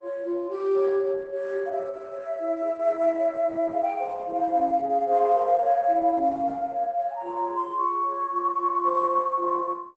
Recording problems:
lossy compression; Opus, log-spectral distance 2 dB, nothing above 8 kHz

